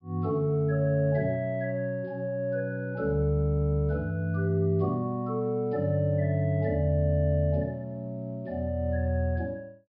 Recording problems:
low-pass filter; nothing above 5.5 kHz

